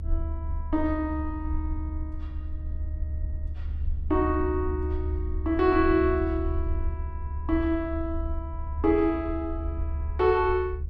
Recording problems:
low-frequency rumble; below 74 Hz, strongest tone 72 Hz, SNR 6 dB

